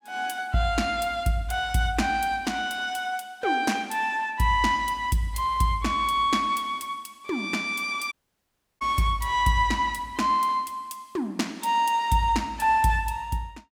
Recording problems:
audio cutting out; at 8 s for 0.5 s

